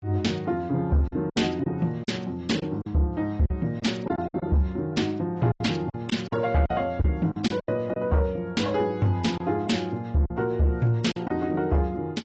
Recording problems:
codec artefacts; AAC, log-spectral distance 2 dB, nothing above 7.6 kHz
distorted audio; soft clipping, signal-to-distortion ratio 11 dB
lost packets; 8% of the sound replaced, filled with silence

